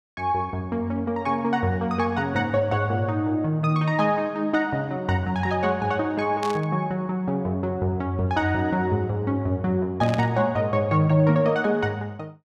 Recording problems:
static burst; at 6.5 s and at 10 s; peak -6 dB vs average level

